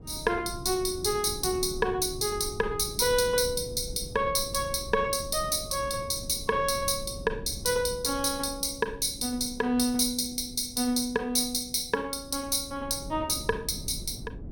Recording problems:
wind on the microphone; below 200 Hz, SNR 15 dB

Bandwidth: 17 kHz